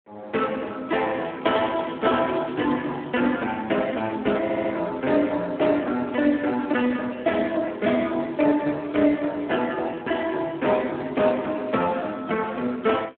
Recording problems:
phone line; 220 Hz to 3.6 kHz, Speex
stutter; at 4.5 s

